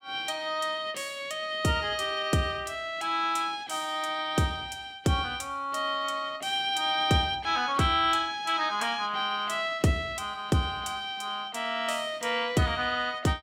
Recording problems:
none

